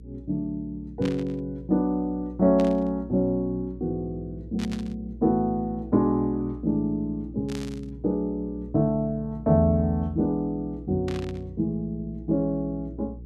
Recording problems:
hum; 60 Hz, harmonics up to 480 Hz, SNR 16 dB
static burst; 5 times, first at 1 s; peak -8 dB vs average level

